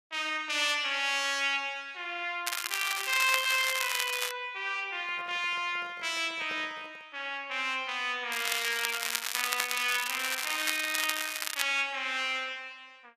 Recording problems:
crackling; from 2.5 to 4.5 s and from 8.5 to 12 s; loose cable, SNR 2 dB
handling noise; from 5 to 7 s; peak -12 dB vs average level

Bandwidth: 14.5 kHz